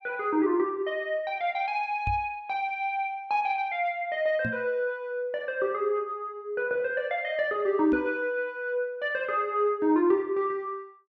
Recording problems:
knock on the microphone; at 2 s, at 4.5 s and at 8 s; peak -2 dB vs average level

